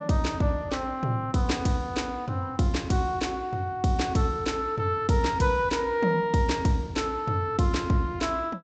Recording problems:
treble cut off; nothing above 8 kHz

